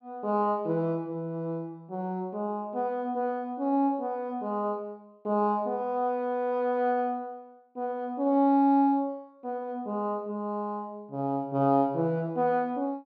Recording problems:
none

